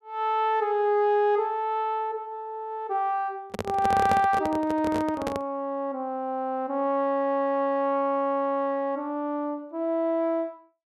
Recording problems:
microphone handling noise; from 3.5 to 5.5 s; peak +2 dB vs average level

